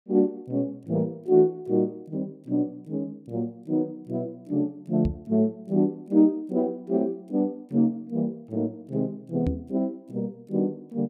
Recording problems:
knock on the microphone; at 5 s and at 9.5 s; peak +3 dB vs average level

